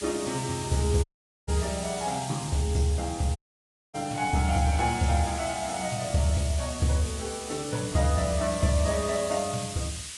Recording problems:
codec artefacts; AAC, log-spectral distance 11 dB, nothing above 10.7 kHz
hiss; SNR 9 dB
dropout; at 1 s and at 3.5 s for 0.5 s

